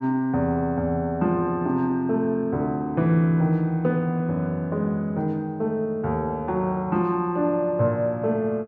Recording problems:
none

